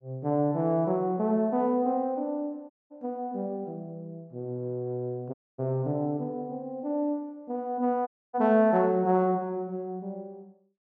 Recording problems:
audio cutting out; at 2.5 s, at 5.5 s and at 8 s

